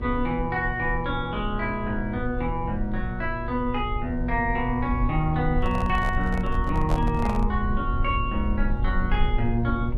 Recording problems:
hum; 60 Hz, harmonics up to 1.1 kHz, SNR 9 dB
low-frequency rumble; below 66 Hz, SNR 4 dB
microphone handling noise; from 5.5 to 7.5 s; peak -2 dB vs average level

